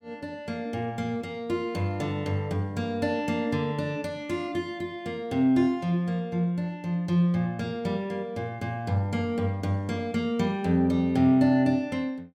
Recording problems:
none

